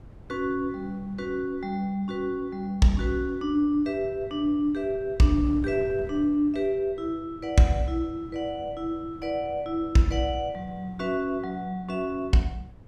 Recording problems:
wind noise; below 220 Hz, SNR 19 dB

